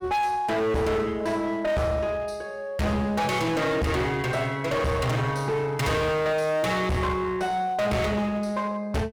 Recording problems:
distortion; hard clipping, uneven, signal-to-distortion ratio 6 dB

